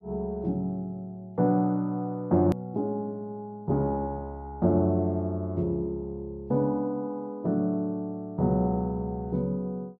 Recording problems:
click at an edit; at 2.5 s

